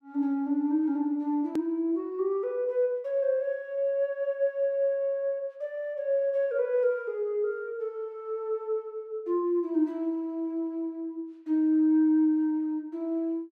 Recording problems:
edit click; at 1.5 s

